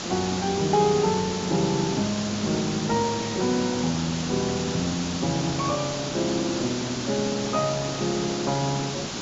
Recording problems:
low-pass filter; nothing above 7.4 kHz
background hiss; SNR 4 dB

